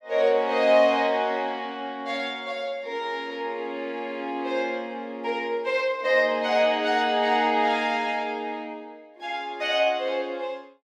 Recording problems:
none

